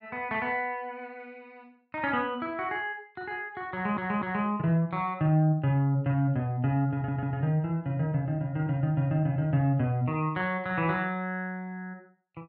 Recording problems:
stutter; at 3.5 s and at 7 s

